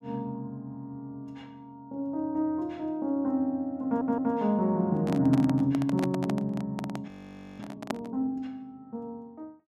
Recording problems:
audio stuttering; at 4 s
microphone handling noise; from 5 to 8 s; peak +1 dB vs average level
audio freezing; at 7 s for 0.5 s

